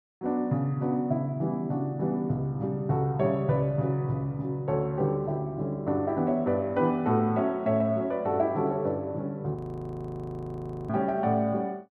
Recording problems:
audio freezing; at 9.5 s for 1.5 s

